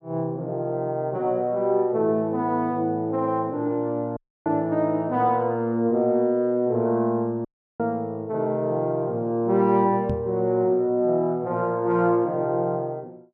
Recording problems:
dropout; at 4 s and at 7.5 s
knock on the microphone; at 10 s; peak -1 dB vs average level

